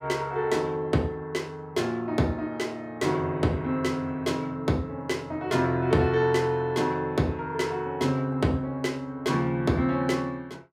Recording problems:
none

